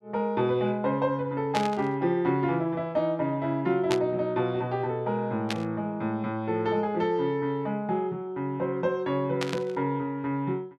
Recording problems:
burst of static; 4 times, first at 1.5 s; peak +1 dB vs average level

